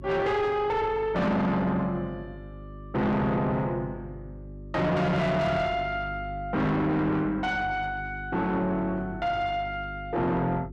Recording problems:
distortion; soft clipping, signal-to-distortion ratio 5 dB
hum; 50 Hz, harmonics up to 400 Hz, SNR 15 dB

